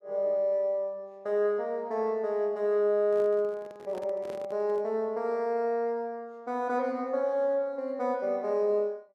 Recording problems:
microphone handling noise; from 3 to 5 s; peak -11 dB vs average level

